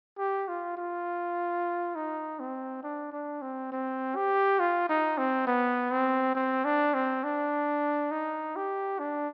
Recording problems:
treble cut off; nothing above 5.5 kHz

